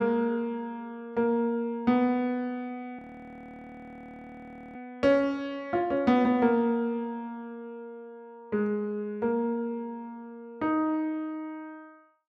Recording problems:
frozen audio; at 3 s for 2 s

